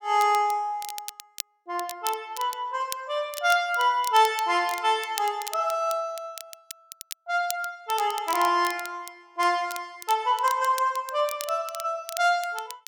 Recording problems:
crackling; vinyl, SNR 14 dB

